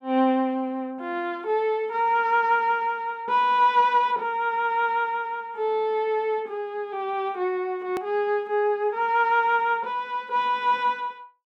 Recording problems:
edit click; at 8 s

